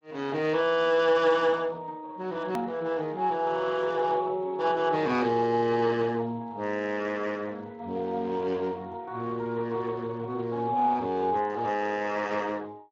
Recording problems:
codec artefacts; Speex, log-spectral distance 2 dB, nothing above 17.1 kHz
edit click; at 2.5 s

